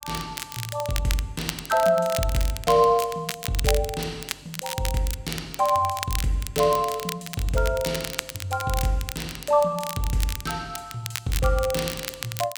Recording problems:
crackle; vinyl, SNR 8 dB

